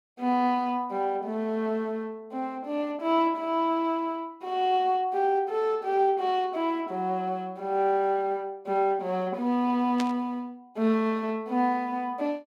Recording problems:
static burst; at 10 s; peak -4 dB vs average level

